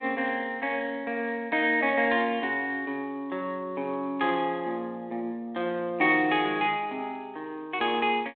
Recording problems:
phone line; 240 Hz to 3.7 kHz, G.726

